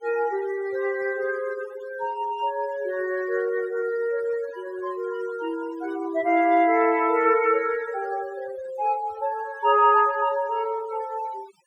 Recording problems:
denoising artefacts; signal-to-artefact ratio 21 dB

